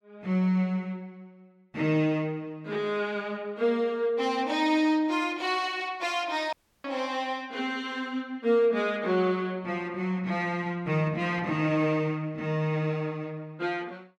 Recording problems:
dropout; at 6.5 s

